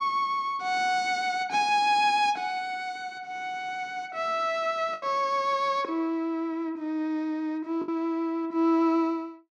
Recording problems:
lost packets; 1.5% of the sound replaced, filled with the last packet

